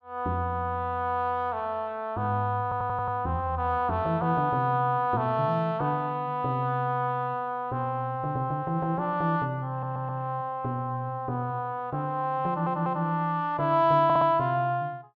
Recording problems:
stutter; 4 times, first at 2.5 s

